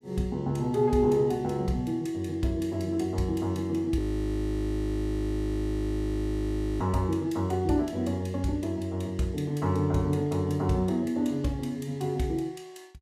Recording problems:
frozen audio; at 4 s for 3 s

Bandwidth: 15.5 kHz